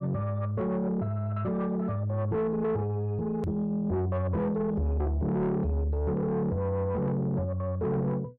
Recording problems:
distortion; soft clipping, signal-to-distortion ratio 11 dB
hard cut with a click; at 3.5 s

